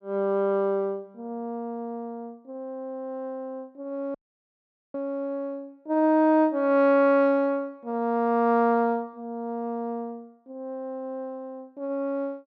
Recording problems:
audio cutting out; at 4 s for 1 s

